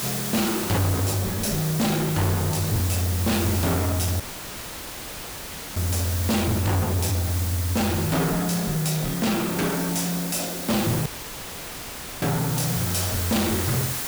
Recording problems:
distortion; soft clipping, signal-to-distortion ratio 6 dB
background hiss; slope -1 dB per octave, SNR 5 dB
audio cutting out; at 4 s for 1.5 s and at 11 s for 1 s; filled with static

